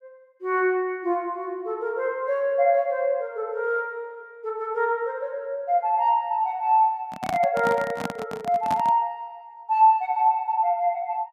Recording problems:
microphone handling noise; from 7 to 9 s; peak -1 dB vs average level

